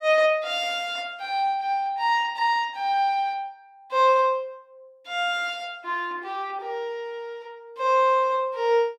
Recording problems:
none

